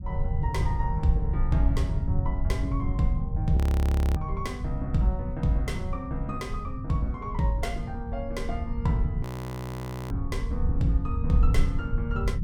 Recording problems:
rumble; below 100 Hz, SNR 0 dB
frozen audio; at 3.5 s for 0.5 s and at 9 s for 1 s

